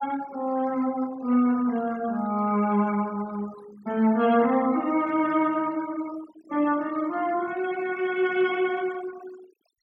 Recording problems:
noise reduction artefacts; signal-to-artefact ratio 21 dB

